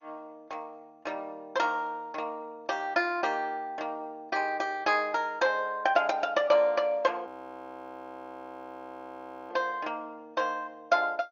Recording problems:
lossy compression; MP2, log-spectral distance 2 dB, nothing above 6.7 kHz
audio freezing; at 7.5 s for 2 s

